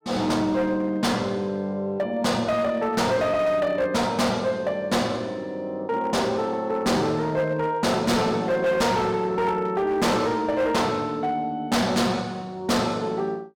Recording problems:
distorted audio; hard clipping, signal-to-distortion ratio 7 dB

